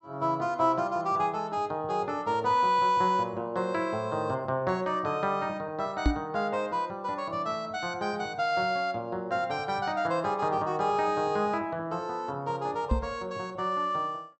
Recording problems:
treble cut off; nothing above 8 kHz
microphone thump; at 6 s and at 13 s; peak +7 dB vs average level

